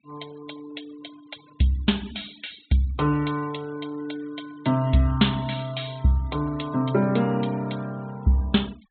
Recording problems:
treble missing; nothing above 4 kHz
denoising artefacts; signal-to-artefact ratio 24 dB

